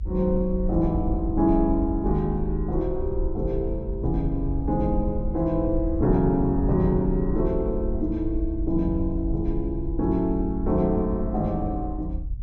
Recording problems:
low-pass filter; nothing above 8 kHz
low-frequency rumble; below 66 Hz, SNR 6 dB

